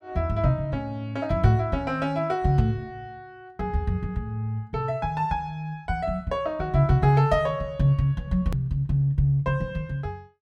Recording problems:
click at an edit; at 8.5 s

